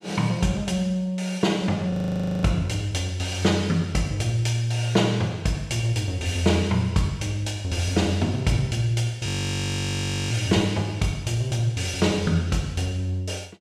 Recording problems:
audio freezing; at 2 s for 0.5 s and at 9.5 s for 1 s

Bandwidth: 14 kHz